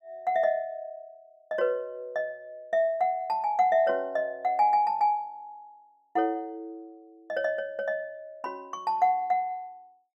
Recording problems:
none

